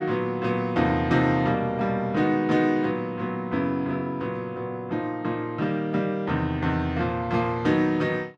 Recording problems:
none

